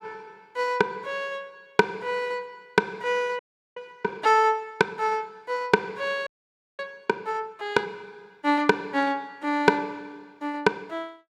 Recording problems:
audio freezing; at 3.5 s and at 6.5 s for 0.5 s

